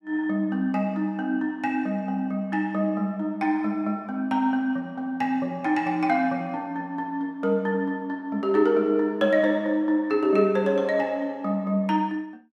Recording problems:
none

